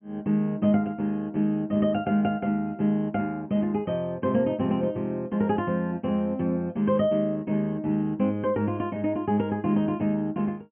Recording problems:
treble cut off; nothing above 3.2 kHz

